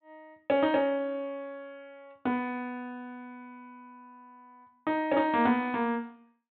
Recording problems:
treble missing; nothing above 4 kHz

